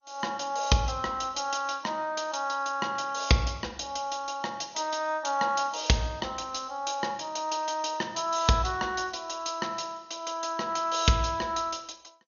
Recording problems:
lossy compression; MP2, log-spectral distance 6 dB, nothing above 6.7 kHz

